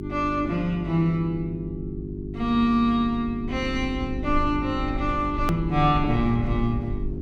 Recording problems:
electrical hum; 50 Hz, harmonics up to 400 Hz, SNR 9 dB
low-frequency rumble; below 70 Hz, SNR 11 dB
hard cut with a click; at 5.5 s

